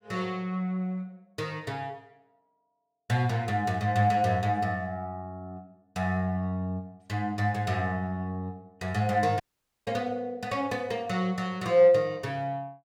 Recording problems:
audio cutting out; at 9.5 s

